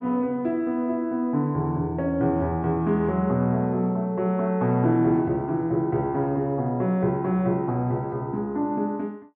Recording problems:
none

